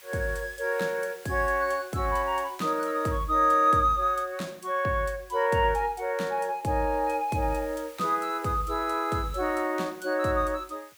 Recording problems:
background hiss; SNR 23 dB

